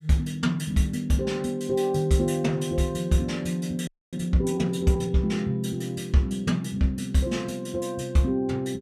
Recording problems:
audio freezing; at 4 s

